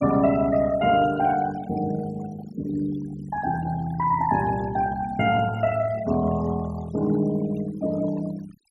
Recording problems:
denoising artefacts; signal-to-artefact ratio 16 dB

